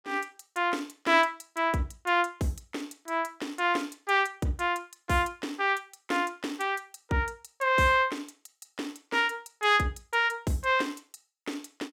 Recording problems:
none

